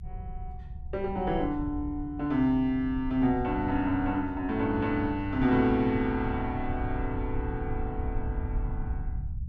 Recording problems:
low-frequency rumble; below 88 Hz, SNR 9 dB

